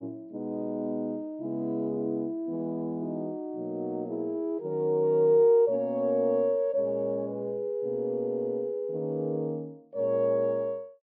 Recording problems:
low-pass filter; nothing above 5.5 kHz

